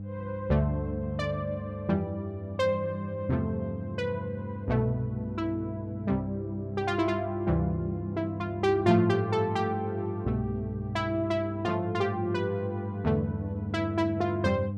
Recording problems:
hum; 50 Hz, harmonics up to 500 Hz, SNR 7 dB

